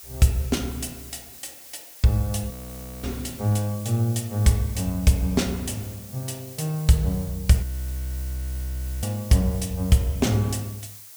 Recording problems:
hiss; slope +2 dB per octave, SNR 16 dB
frozen audio; at 2.5 s for 0.5 s and at 7.5 s for 1.5 s

